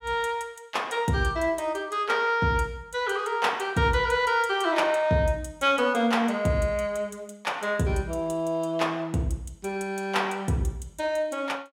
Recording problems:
none

